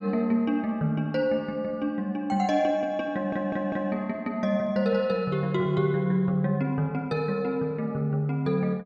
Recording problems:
audio stuttering; at 3 s

